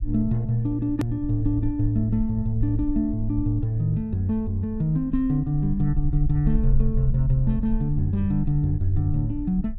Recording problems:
rumble; below 48 Hz, strongest tone 20 Hz, SNR 8 dB
hard cut with a click; at 1 s

